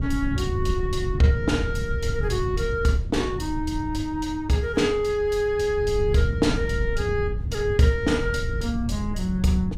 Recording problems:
wind on the microphone; below 110 Hz, SNR 5 dB

